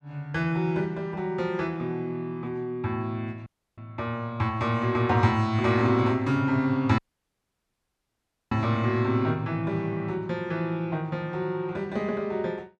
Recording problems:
audio cutting out; at 3.5 s and at 7 s for 1.5 s

